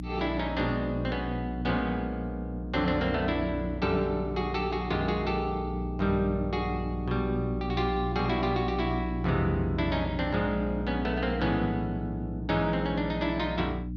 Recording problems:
electrical hum; 60 Hz, harmonics up to 300 Hz, SNR 5 dB

